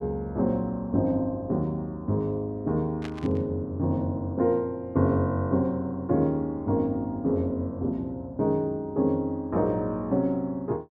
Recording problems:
static burst; at 3 s; peak -8 dB vs average level

